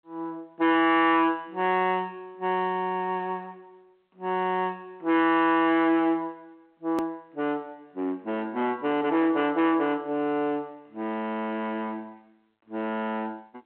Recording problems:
telephone audio; 840 Hz to 3.4 kHz, G.726
distortion; hard clipping, signal-to-distortion ratio 7 dB
hard cut with a click; at 7 s

